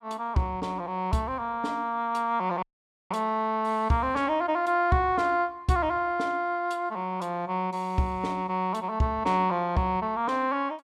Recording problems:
audio cutting out; at 2.5 s

